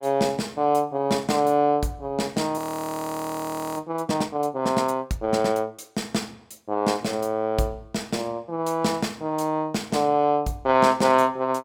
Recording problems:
audio freezing; at 2.5 s for 1 s

